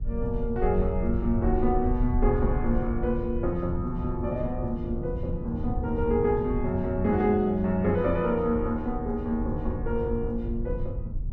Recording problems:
rumble; below 72 Hz, SNR 7 dB
wind on the microphone; below 150 Hz, SNR 9 dB

